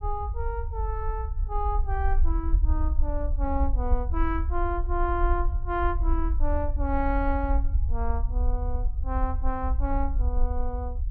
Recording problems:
low-frequency rumble; below 58 Hz, SNR -3 dB

